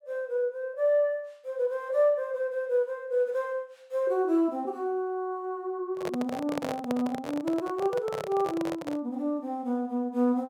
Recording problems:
microphone handling noise; from 6 to 9 s; peak 0 dB vs average level

